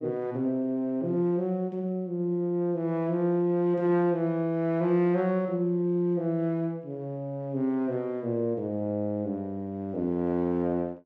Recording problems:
none

